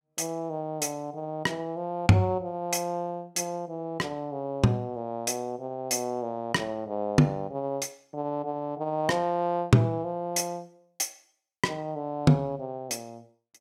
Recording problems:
none

